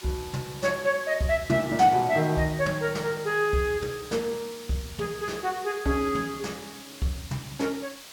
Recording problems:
background hiss; slope +1 dB per octave, SNR 15 dB

